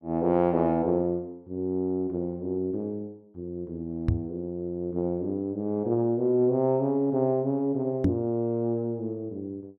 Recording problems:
microphone bump; at 4 s and at 8 s; peak +7 dB vs average level

